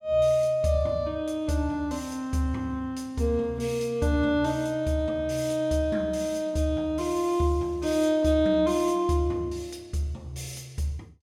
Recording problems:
none

